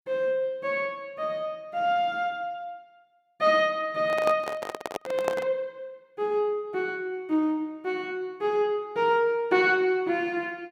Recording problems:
handling noise; from 4 to 5.5 s; peak +2 dB vs average level

